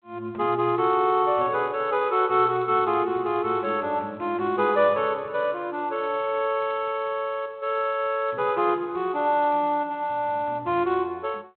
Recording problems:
phone line; 260 Hz to 3.5 kHz, G.726

